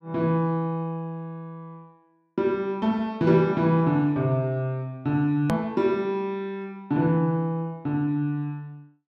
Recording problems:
hard cut with a click; at 5.5 s

